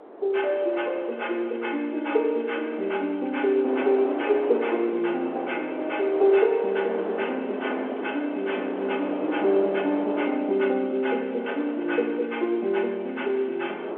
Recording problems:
telephone audio; 300 Hz to 3.4 kHz, G.711
wind noise; below 740 Hz, SNR 9 dB

